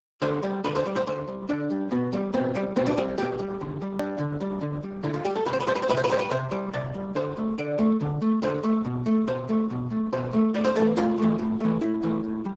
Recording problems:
codec artefacts; Speex, then Opus, log-spectral distance 4 dB
click at an edit; at 4 s

